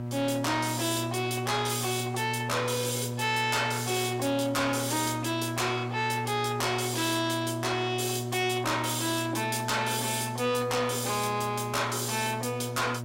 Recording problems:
distorted audio; soft clipping, signal-to-distortion ratio 12 dB
hum; 60 Hz, harmonics up to 960 Hz, SNR 7 dB
background hiss; slope -5 dB per octave, SNR 27 dB

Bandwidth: 16 kHz